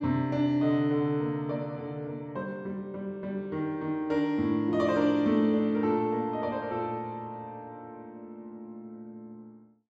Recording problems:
none

